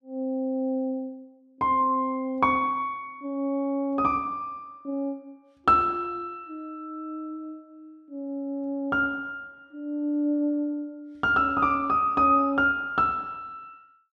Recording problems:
none

